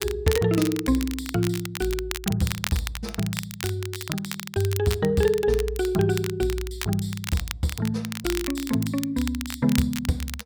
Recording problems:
crackling; vinyl, SNR 9 dB

